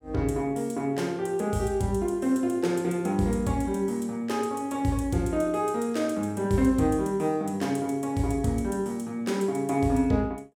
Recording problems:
none

